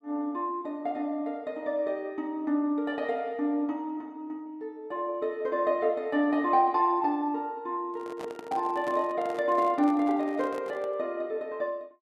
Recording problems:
microphone handling noise; from 8 to 11 s; peak -7 dB vs average level

